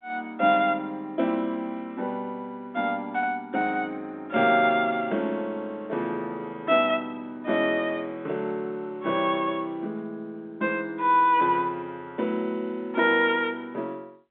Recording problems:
phone line; 170 Hz to 3.6 kHz, G.711

